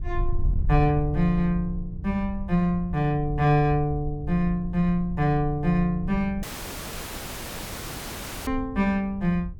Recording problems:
wind noise; below 70 Hz, SNR 9 dB
audio cutting out; at 6.5 s for 2 s

